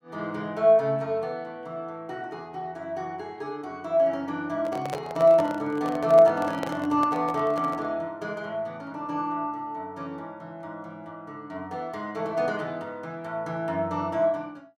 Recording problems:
microphone handling noise; from 4.5 to 8 s; peak -2 dB vs average level

